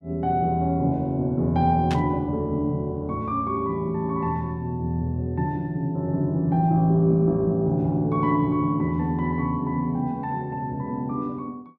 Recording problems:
burst of static; at 2 s; peak -5 dB vs average level

